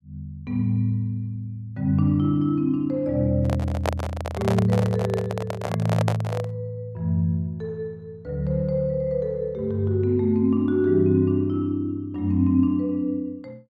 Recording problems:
microphone handling noise; from 3.5 to 6.5 s; peak +3 dB vs average level

